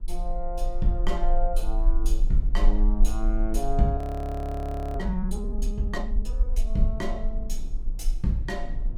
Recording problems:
rumble; below 36 Hz, strongest tone 22 Hz, SNR -1 dB
wind on the microphone; below 200 Hz, SNR 16 dB
audio freezing; at 4 s for 1 s

